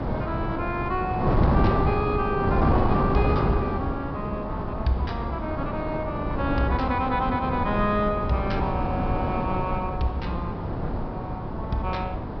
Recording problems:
treble cut off; nothing above 5.5 kHz
wind on the microphone; below 540 Hz, SNR -1 dB

